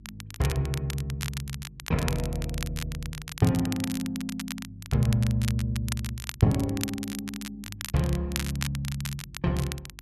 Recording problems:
hum; 50 Hz, harmonics up to 350 Hz, SNR 23 dB
crackle; vinyl, SNR 9 dB

